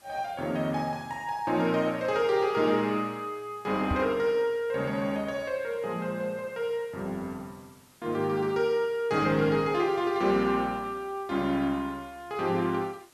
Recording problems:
hiss; slope -1 dB per octave, SNR 29 dB
microphone bump; at 4 s; peak +1 dB vs average level

